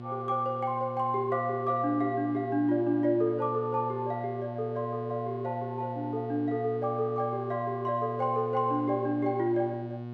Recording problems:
electrical hum; 60 Hz, harmonics up to 1.1 kHz, SNR 9 dB

